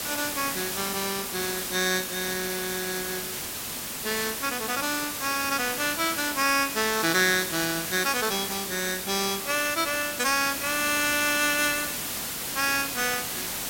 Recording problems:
hiss; slope -1 dB per octave, SNR 3 dB

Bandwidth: 16.5 kHz